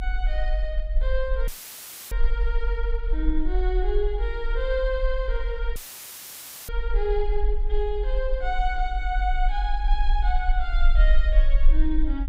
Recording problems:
rumble; below 44 Hz, SNR -3 dB
dropout; at 1.5 s for 0.5 s and at 6 s for 1 s; filled with static

